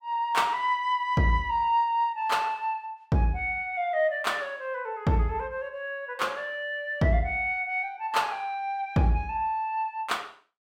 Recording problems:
none

